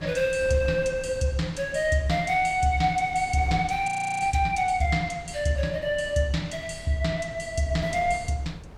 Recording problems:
wind on the microphone; below 260 Hz, SNR 17 dB
audio freezing; at 4 s

